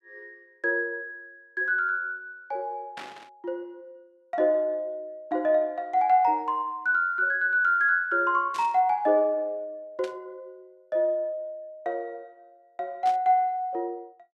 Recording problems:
burst of static; 4 times, first at 3 s; peak -10 dB vs average level

